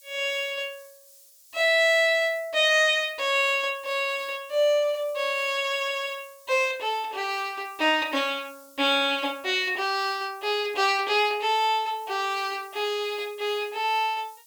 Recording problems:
background hiss; SNR 26 dB

